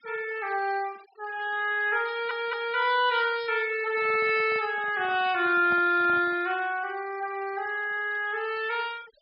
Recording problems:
low-pass filter; nothing above 5.3 kHz
noise reduction artefacts; signal-to-artefact ratio 21 dB
audio stuttering; at 2 s
microphone handling noise; from 4 to 6.5 s; peak -11 dB vs average level

